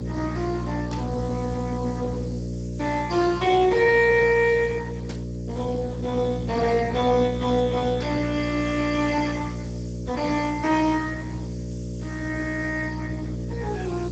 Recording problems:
codec artefacts; Speex, log-spectral distance 4 dB, nothing above 7.3 kHz
electrical hum; 60 Hz, harmonics up to 600 Hz, SNR 8 dB
background hiss; slope +4 dB per octave, SNR 27 dB
burst of static; at 1 s, at 5 s and at 8 s; peak -9 dB vs average level

